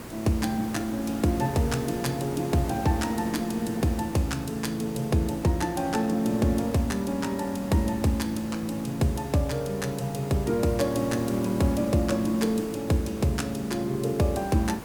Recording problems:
hiss; slope -6 dB per octave, SNR 13 dB

